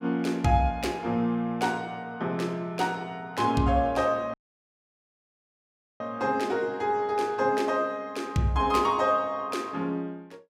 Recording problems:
audio cutting out; at 4.5 s for 1.5 s

